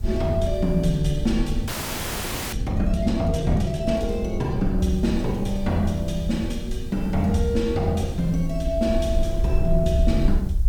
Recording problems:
background hiss; slope +4 dB per octave, SNR 30 dB
rumble; below 62 Hz, SNR 6 dB
wind noise; below 280 Hz, SNR 20 dB
audio freezing; at 1.5 s for 1 s

